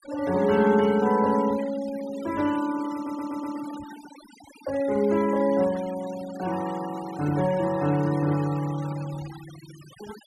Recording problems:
denoising artefacts; signal-to-artefact ratio 18 dB
audio stuttering; at 3 s

